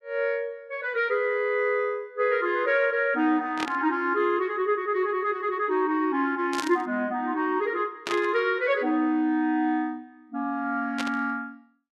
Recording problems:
burst of static; 4 times, first at 3.5 s; peak -1 dB vs average level

